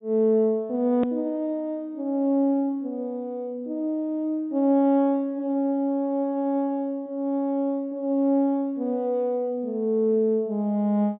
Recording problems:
low-pass filter; nothing above 4 kHz
click at an edit; at 1 s

